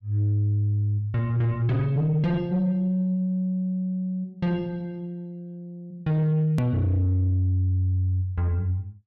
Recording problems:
distorted audio; soft clipping, signal-to-distortion ratio 12 dB
hard cut with a click; at 6.5 s

